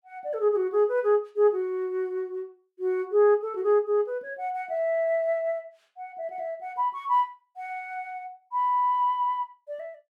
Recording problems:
none

